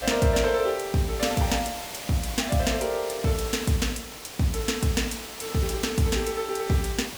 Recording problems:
hiss; slope -2 dB per octave, SNR 10 dB

